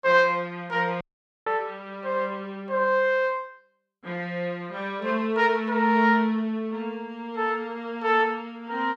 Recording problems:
dropout; at 1 s

